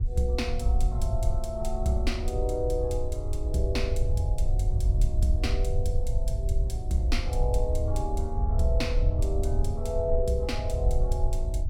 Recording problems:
wind noise; below 70 Hz, SNR -3 dB

